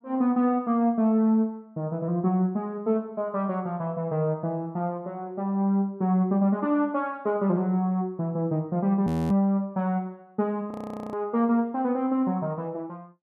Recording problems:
frozen audio; at 9 s and at 11 s

